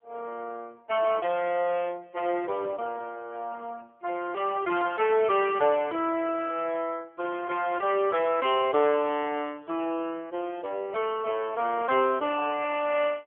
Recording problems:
telephone audio; 300 Hz to 3.3 kHz, AMR-NB

